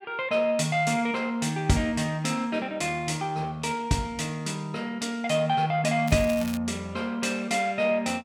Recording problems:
crackling; at 6 s; loose cable, SNR 15 dB

